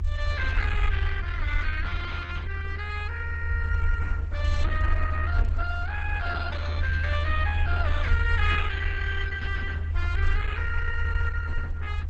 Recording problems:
lossy compression; Opus, log-spectral distance 4 dB, nothing above 7.8 kHz
rumble; below 80 Hz, SNR -3 dB

